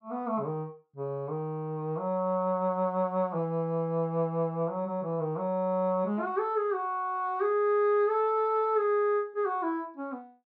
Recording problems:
none

